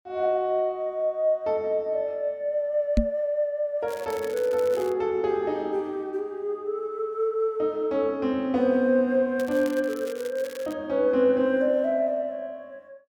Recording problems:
knock on the microphone; at 3 s; peak +6 dB vs average level
crackle; from 4 to 5 s and from 9.5 to 11 s; loose cable, SNR 20 dB

